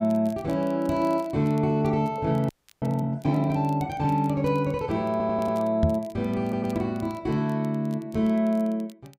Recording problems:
crackling; vinyl, SNR 29 dB
frozen audio; at 2.5 s
audio stuttering; at 5 s and at 6.5 s
microphone bump; at 6 s; peak +6 dB vs average level

